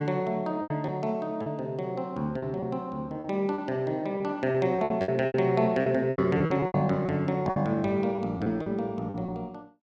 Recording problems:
packet loss; 11% of the sound replaced, filled with repeated pitch periods

